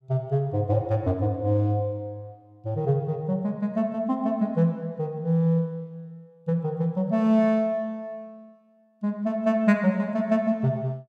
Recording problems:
none

